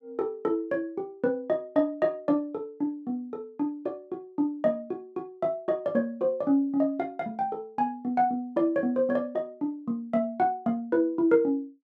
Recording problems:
none

